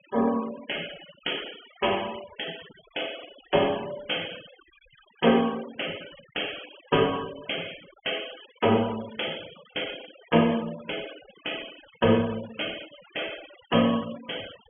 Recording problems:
treble cut off; nothing above 3.4 kHz
denoising artefacts; signal-to-artefact ratio 16 dB

